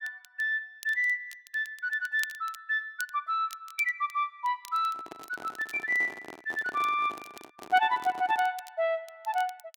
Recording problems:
crackle; vinyl, SNR 21 dB
handling noise; from 5 to 8.5 s; peak -9 dB vs average level

